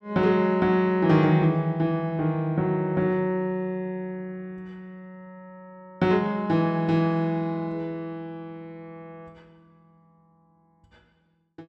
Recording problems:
none

